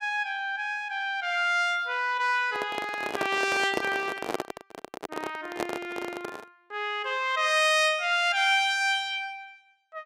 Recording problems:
handling noise; from 2.5 to 6.5 s; peak +1 dB vs average level

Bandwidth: 15.5 kHz